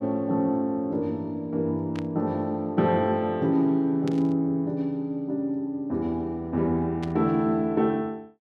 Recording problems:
static burst; at 2 s, at 4 s and at 7 s; peak -11 dB vs average level

